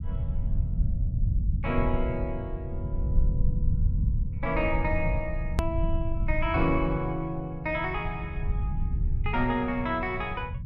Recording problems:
low-frequency rumble; below 96 Hz, SNR 0 dB
edit click; at 5.5 s

